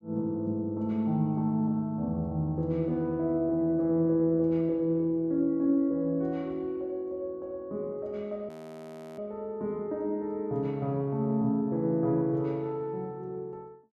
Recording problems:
frozen audio; at 8.5 s for 0.5 s

